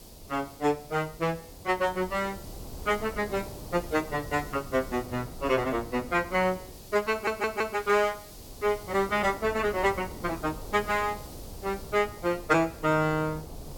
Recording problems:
background hiss; SNR 20 dB
wind on the microphone; below 450 Hz, SNR 16 dB
audio stuttering; at 7 s

